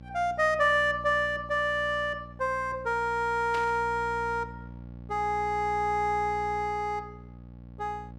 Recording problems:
hum; 60 Hz, harmonics up to 840 Hz, SNR 17 dB
burst of static; at 3.5 s; peak -7 dB vs average level

